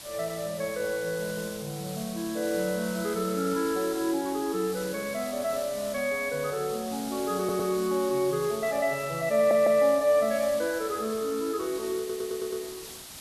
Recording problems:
hiss; slope 0 dB per octave, SNR 12 dB
stutter; at 7.5 s, at 9.5 s and at 12 s

